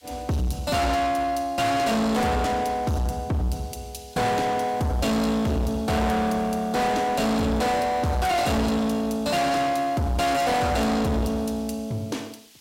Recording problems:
distortion; soft clipping, signal-to-distortion ratio 6 dB
background hiss; SNR 27 dB

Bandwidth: 16 kHz